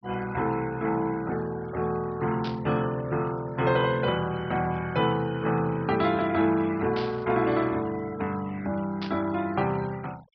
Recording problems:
low-pass filter; nothing above 5.5 kHz
noise reduction artefacts; signal-to-artefact ratio 21 dB
static burst; at 2.5 s, at 7 s and at 9 s; peak -6 dB vs average level

